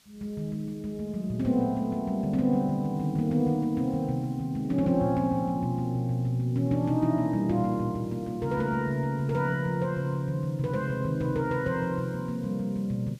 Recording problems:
background hiss; slope +1 dB per octave, SNR 30 dB

